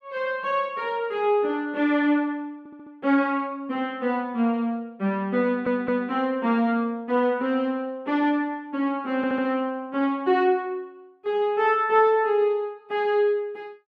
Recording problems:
stutter; at 2.5 s, at 5.5 s and at 9 s

